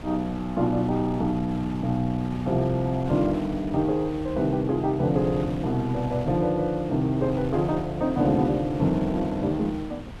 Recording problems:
wind noise; below 390 Hz, SNR 14 dB

